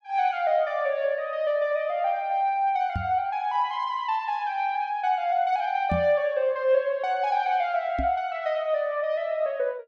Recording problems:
microphone thump; at 3 s, at 6 s and at 8 s; peak 0 dB vs average level

